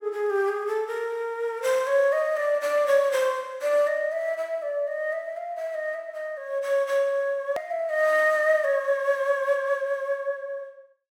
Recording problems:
hard cut with a click; at 7.5 s

